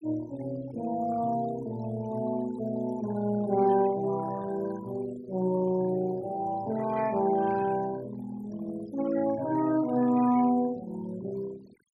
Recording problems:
noise reduction artefacts; signal-to-artefact ratio 18 dB

